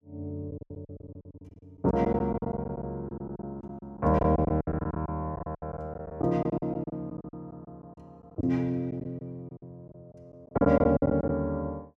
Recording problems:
packet loss; 16% of the sound replaced, filled with silence

